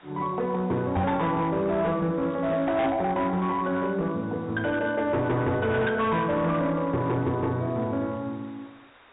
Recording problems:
low-pass filter; nothing above 4 kHz
distorted audio; hard clipping, uneven, signal-to-distortion ratio 11 dB
background hiss; SNR 27 dB
microphone bump; at 1 s; peak +2 dB vs average level
crackle; at 2.5 s; loose cable, SNR 27 dB

